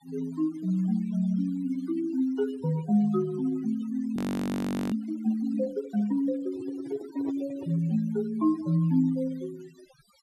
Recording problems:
denoising artefacts; signal-to-artefact ratio 20 dB
audio freezing; at 4 s for 1 s
handling noise; from 6.5 to 8 s; peak -5 dB vs average level

